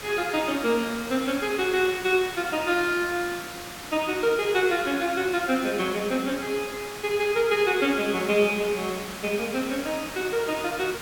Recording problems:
background hiss; slope -2 dB per octave, SNR 11 dB

